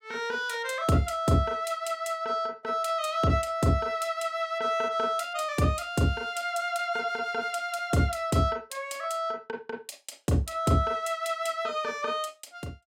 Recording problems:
none

